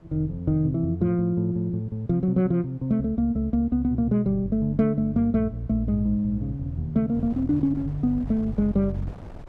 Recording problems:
wind noise; below 230 Hz, SNR 24 dB

